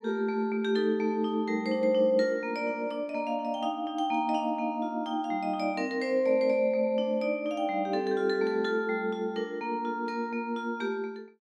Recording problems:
none

